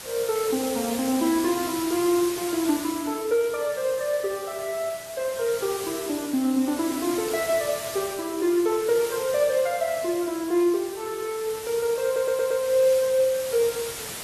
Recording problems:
lossy codec; AAC, log-spectral distance 8 dB
hiss; slope -1 dB per octave, SNR 10 dB
audio stuttering; at 12 s

